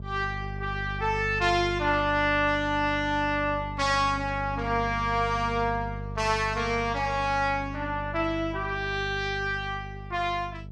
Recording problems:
hum; 50 Hz, harmonics up to 450 Hz, SNR 10 dB

